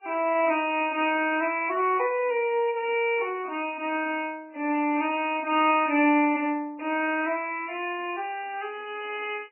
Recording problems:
lossy compression; MP3, log-spectral distance 4 dB, nothing above 2.5 kHz

